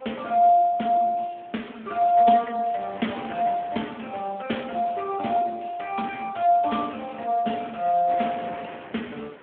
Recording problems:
phone line; 150 Hz to 3.1 kHz, Speex
wind on the microphone; below 1.8 kHz, SNR 21 dB

